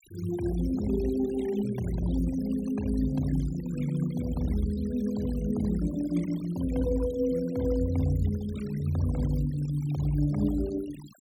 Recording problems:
denoising artefacts; signal-to-artefact ratio 19 dB

